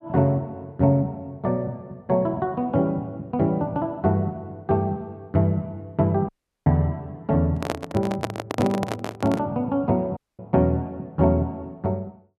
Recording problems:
audio cutting out; at 6.5 s and at 10 s
handling noise; from 7.5 to 9.5 s; peak +2 dB vs average level

